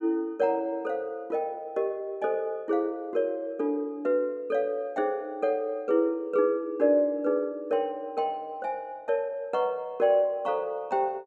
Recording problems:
none

